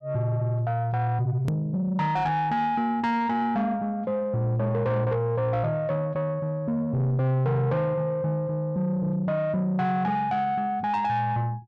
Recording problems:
distorted audio; soft clipping, signal-to-distortion ratio 11 dB
click at an edit; at 1.5 s

